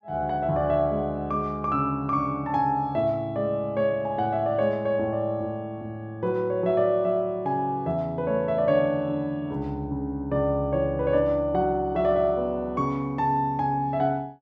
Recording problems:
none

